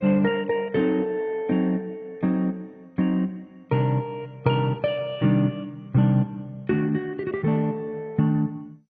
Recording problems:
lossy compression; MP2, log-spectral distance 2 dB

